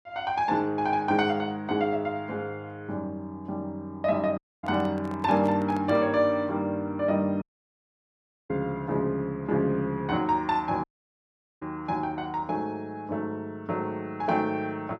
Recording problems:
audio cutting out; at 4.5 s, at 7.5 s for 1 s and at 11 s for 1 s
handling noise; from 4.5 to 6 s; peak -8 dB vs average level

